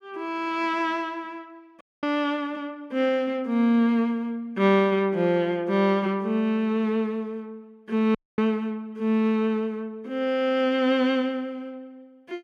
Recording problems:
audio cutting out; at 2 s and at 8 s

